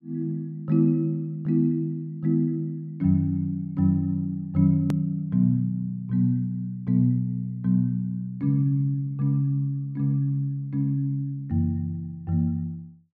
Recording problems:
edit click; at 5 s

